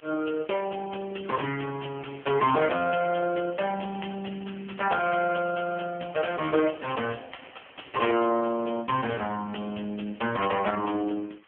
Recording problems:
phone line; 190 Hz to 3.1 kHz, AMR-NB
background hiss; SNR 29 dB

